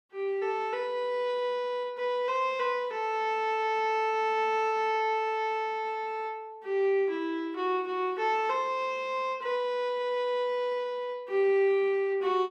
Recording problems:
none

